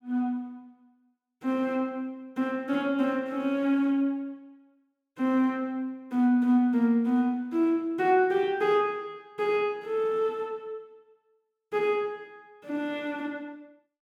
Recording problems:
none

